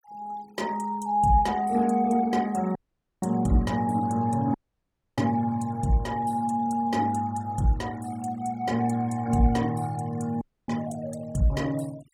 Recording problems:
noise reduction artefacts; signal-to-artefact ratio 22 dB
audio cutting out; at 3 s, at 4.5 s for 0.5 s and at 10 s

